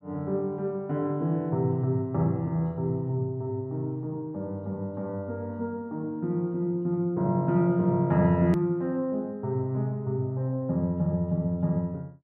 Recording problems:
click at an edit; at 8.5 s

